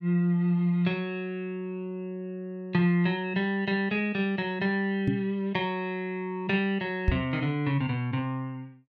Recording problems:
microphone bump; at 5 s and at 7 s; peak +7 dB vs average level

